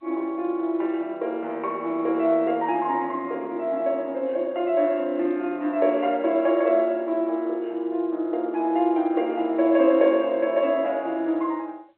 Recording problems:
phone line; 260 Hz to 3.4 kHz, G.711

